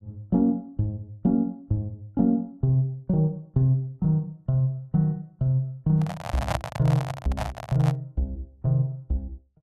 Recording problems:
microphone handling noise; from 6 to 8 s; peak +3 dB vs average level

